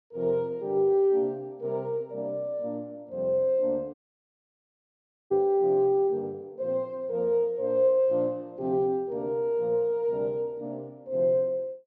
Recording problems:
dropout; at 4 s for 1.5 s

